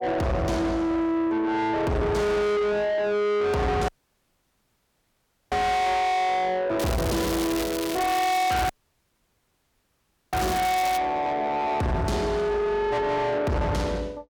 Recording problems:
distortion; soft clipping, signal-to-distortion ratio 6 dB
audio cutting out; at 4 s for 1.5 s and at 8.5 s for 1.5 s
crackle; from 7 to 11 s; loose cable, SNR 7 dB

